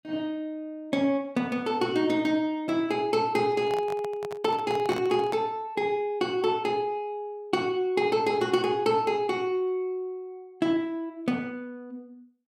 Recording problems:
handling noise; from 3.5 to 5.5 s; peak -4 dB vs average level

